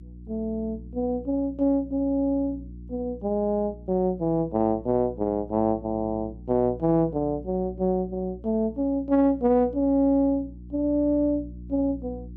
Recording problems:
electrical hum; 60 Hz, harmonics up to 360 Hz, SNR 17 dB

